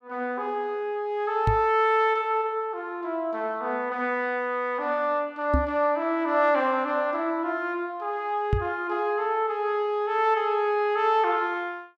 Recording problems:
knock on the microphone; at 1.5 s, at 5.5 s and at 8.5 s; peak +4 dB vs average level

